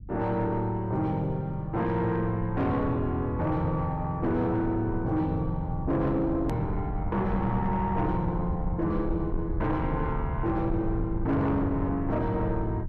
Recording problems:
distortion; soft clipping, signal-to-distortion ratio 12 dB
low-frequency rumble; below 120 Hz, SNR 8 dB
edit click; at 6.5 s

